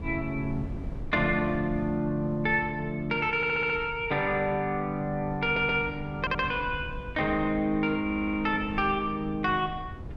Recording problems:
wind noise; below 150 Hz, SNR 15 dB
stutter; 4 times, first at 3.5 s

